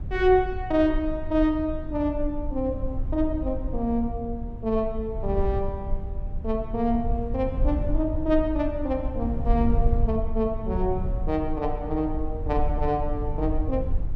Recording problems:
low-frequency rumble; below 68 Hz, SNR 5 dB

